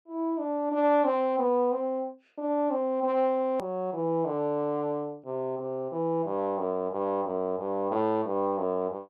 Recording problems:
edit click; at 3.5 s

